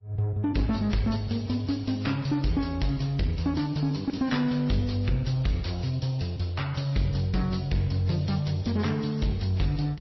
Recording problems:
codec artefacts; MP3, then AAC, log-spectral distance 5 dB, nothing above 5.7 kHz
distorted audio; soft clipping, signal-to-distortion ratio 11 dB

